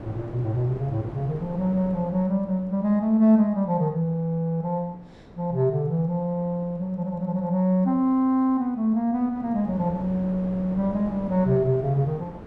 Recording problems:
wind on the microphone; below 520 Hz, SNR 18 dB

